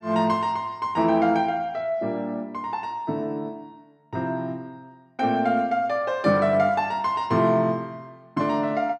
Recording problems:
none

